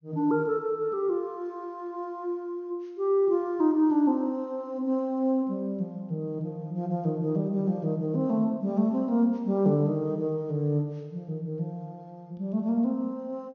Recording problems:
low-pass filter; nothing above 6.7 kHz

